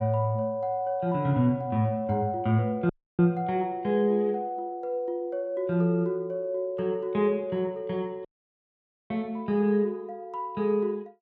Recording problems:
audio cutting out; at 3 s and at 8.5 s for 1 s

